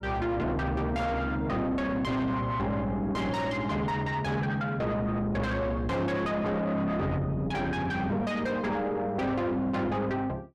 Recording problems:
distortion; soft clipping, signal-to-distortion ratio 7 dB

